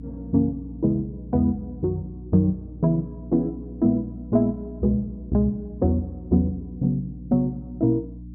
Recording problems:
hum; 60 Hz, harmonics up to 300 Hz, SNR 14 dB

